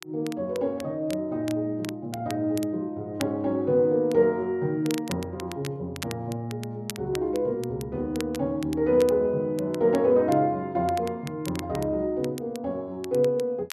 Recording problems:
crackle; vinyl, SNR 17 dB

